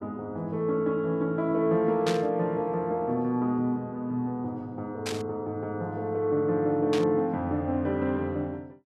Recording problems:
static burst; at 2 s, at 5 s and at 7 s; peak -1 dB vs average level

